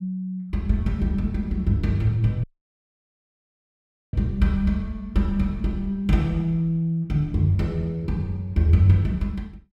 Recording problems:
dropout; at 2.5 s for 1.5 s

